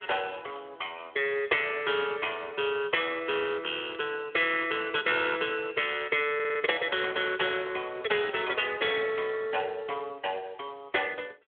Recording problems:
telephone audio; 340 Hz to 3.4 kHz, Speex
stutter; at 6.5 s

